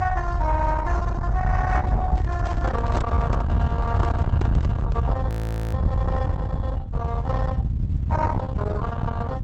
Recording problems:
lossy compression; Opus, log-spectral distance 2 dB
distorted audio; soft clipping, signal-to-distortion ratio 10 dB
low-frequency rumble; below 140 Hz, SNR -1 dB
microphone handling noise; from 2 to 5 s; peak +2 dB vs average level
audio freezing; at 5.5 s

